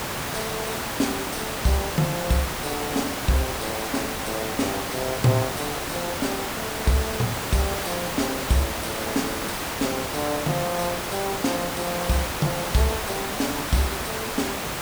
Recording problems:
hiss; slope -4 dB per octave, SNR 1 dB

